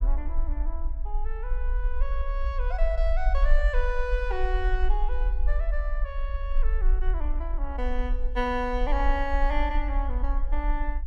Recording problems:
low-frequency rumble; below 44 Hz, strongest tone 20 Hz, SNR -3 dB

